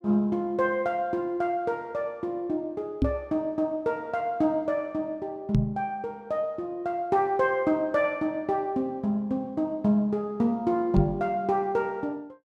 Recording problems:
microphone bump; at 3 s, at 5.5 s and at 11 s; peak +7 dB vs average level

